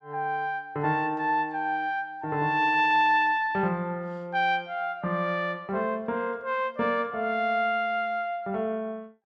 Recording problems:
none

